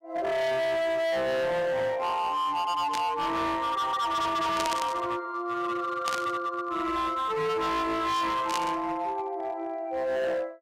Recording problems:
distorted audio; hard clipping, signal-to-distortion ratio 7 dB
burst of static; 4 times, first at 3 s; peak 0 dB vs average level

